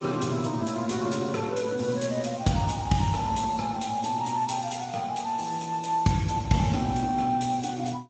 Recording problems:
lossy codec; MP3, then Speex, log-spectral distance 5 dB, nothing above 7.8 kHz

